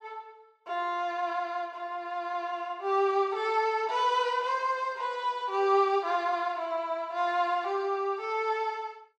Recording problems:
none

